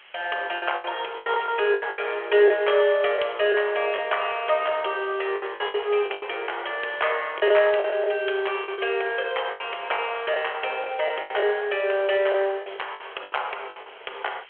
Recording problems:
phone line; 340 Hz to 3.3 kHz, G.726
background hiss; SNR 24 dB
packet loss; 11% of the sound replaced, filled with the last packet

